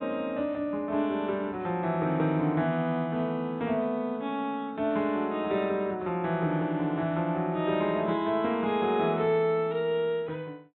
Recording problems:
treble missing; nothing above 3.9 kHz

